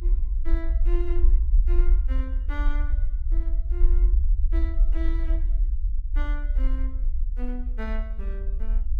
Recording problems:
rumble; below 48 Hz, SNR -13 dB

